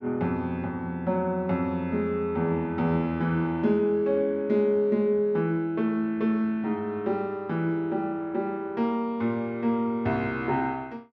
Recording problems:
none

